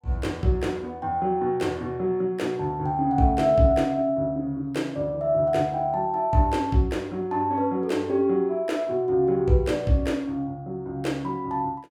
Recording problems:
none

